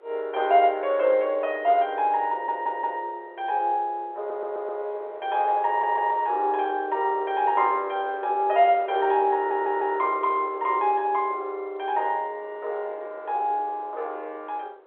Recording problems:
telephone audio; 340 Hz to 3.5 kHz, G.711
wind noise; below 750 Hz, SNR 20 dB
audio stuttering; 4 times, first at 2.5 s

